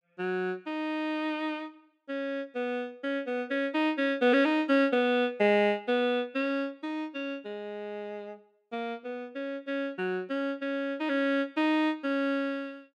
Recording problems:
none

